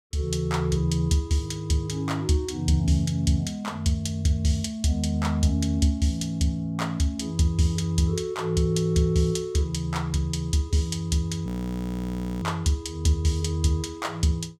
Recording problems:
frozen audio; at 11 s for 1 s

